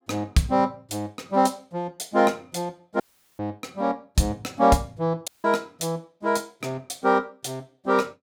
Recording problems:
dropout; at 3 s and at 5.5 s

